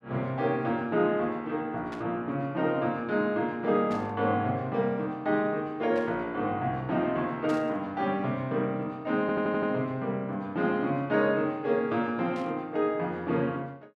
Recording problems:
burst of static; 5 times, first at 2 s; peak -12 dB vs average level
audio stuttering; at 9 s

